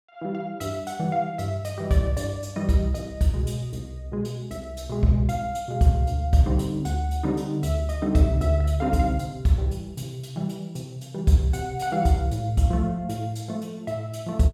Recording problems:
none

